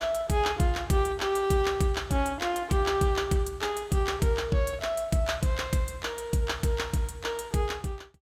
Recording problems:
none

